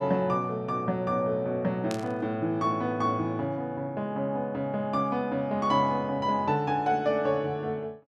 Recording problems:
static burst; at 2 s; peak -6 dB vs average level

